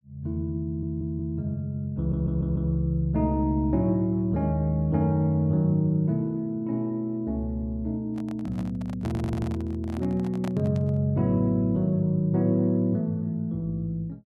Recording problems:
audio stuttering; at 0.5 s, at 2 s and at 9 s
handling noise; from 8 to 11 s; peak -8 dB vs average level

